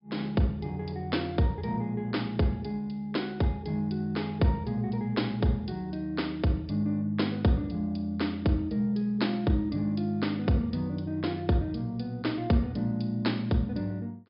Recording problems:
low-pass filter; nothing above 5.5 kHz

